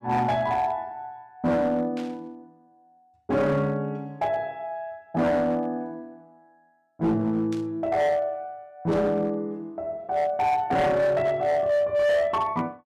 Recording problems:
distorted audio; hard clipping, uneven, signal-to-distortion ratio 11 dB
burst of static; at 2 s, at 7.5 s and at 9 s; peak -13 dB vs average level

